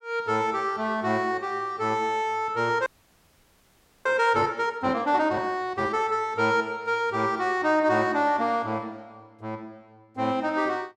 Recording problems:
frozen audio; at 3 s for 1 s

